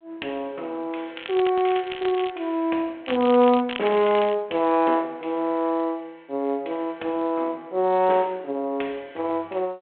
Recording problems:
phone line; 280 Hz to 3.4 kHz, G.726
crackle; from 1 to 2.5 s and from 3 to 4.5 s; loose cable, SNR 13 dB

